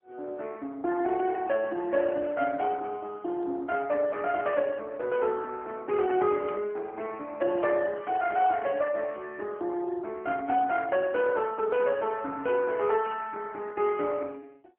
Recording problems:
telephone audio; 260 Hz to 2.8 kHz, AMR-NB
burst of static; at 4.5 s, at 6.5 s and at 13 s; peak -12 dB vs average level

